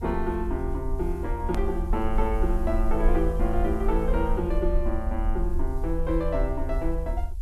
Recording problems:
background hiss; slope +3 dB per octave, SNR 29 dB
low-frequency rumble; below 52 Hz, SNR 1 dB
edit click; at 1.5 s

